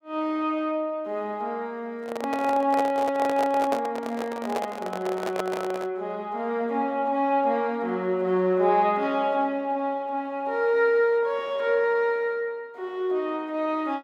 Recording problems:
microphone handling noise; from 2 to 6 s; peak +1 dB vs average level

